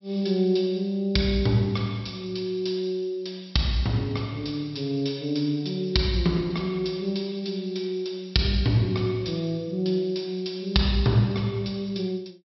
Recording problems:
treble missing; nothing above 5.6 kHz

